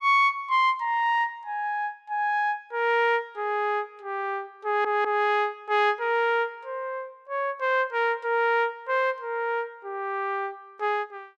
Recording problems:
audio stuttering; at 4.5 s

